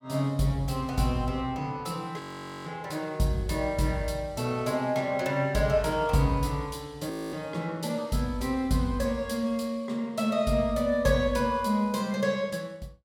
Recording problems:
frozen audio; at 2 s and at 7 s

